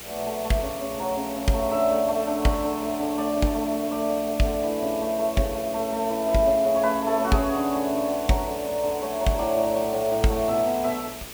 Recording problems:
mains hum; 60 Hz, harmonics up to 480 Hz, SNR 24 dB
hiss; slope 0 dB per octave, SNR 13 dB

